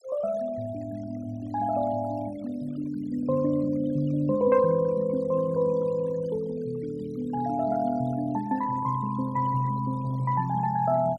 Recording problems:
denoising artefacts; signal-to-artefact ratio 21 dB

